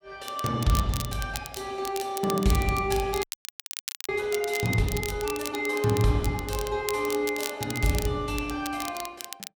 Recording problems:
crackle; vinyl, SNR 10 dB
audio freezing; at 3 s for 1 s

